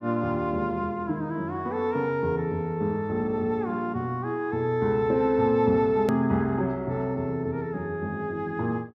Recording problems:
hard cut with a click; at 6 s

